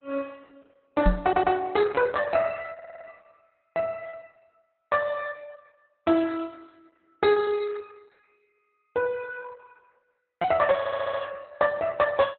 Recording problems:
lossy codec; Opus, log-spectral distance 4 dB, nothing above 4 kHz
lost packets; 9% of the sound replaced, filled with repeated pitch periods
microphone thump; at 1 s; peak +5 dB vs average level
audio stuttering; at 1 s, at 2.5 s and at 11 s

